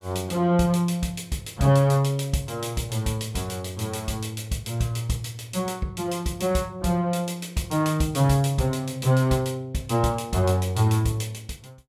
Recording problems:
none

